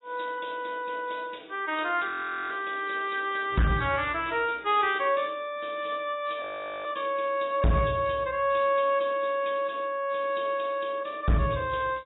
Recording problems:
lossy codec; AAC, log-spectral distance 7 dB, nothing above 3.7 kHz
distortion; hard clipping, signal-to-distortion ratio 12 dB
frozen audio; at 2 s and at 6.5 s

